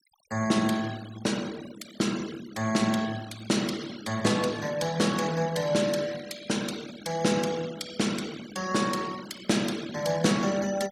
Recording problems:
noise reduction artefacts; signal-to-artefact ratio 15 dB

